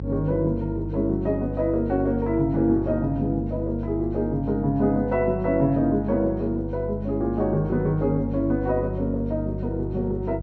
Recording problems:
hum; 50 Hz, harmonics up to 550 Hz, SNR 8 dB

